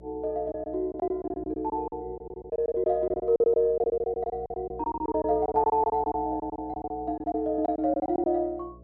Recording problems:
hum; 60 Hz, harmonics up to 660 Hz, SNR 21 dB
packet loss; 16% of the sound replaced, filled with silence

